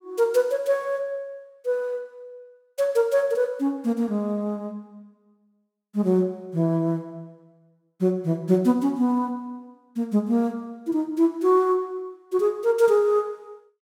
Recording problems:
none

